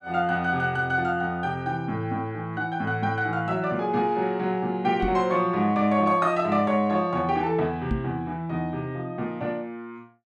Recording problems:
microphone bump; at 5 s and at 8 s; peak +1 dB vs average level

